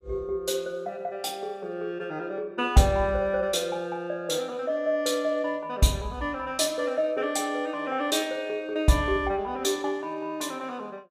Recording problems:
none

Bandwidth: 15 kHz